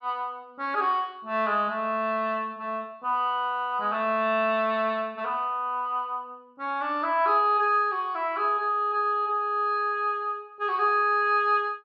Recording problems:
none

